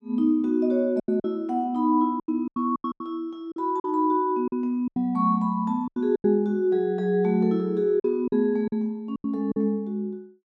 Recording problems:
lost packets; 10% of the sound replaced, filled with silence

